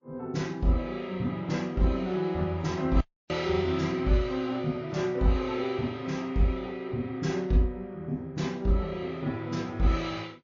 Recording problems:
lossy codec; Vorbis, then MP3, log-spectral distance 2 dB, nothing above 6.7 kHz
audio cutting out; at 3 s

